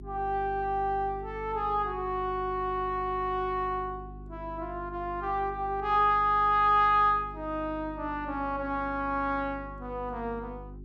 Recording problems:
hum; 50 Hz, harmonics up to 400 Hz, SNR 16 dB

